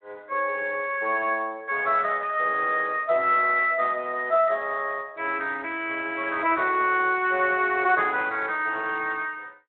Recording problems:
phone line; 300 Hz to 3.3 kHz, Speex

